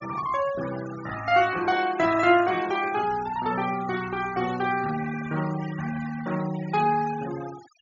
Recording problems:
treble missing; nothing above 7.1 kHz
denoising artefacts; signal-to-artefact ratio 14 dB

